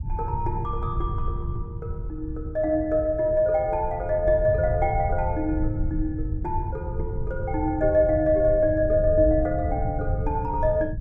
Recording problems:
rumble; below 110 Hz, SNR 7 dB

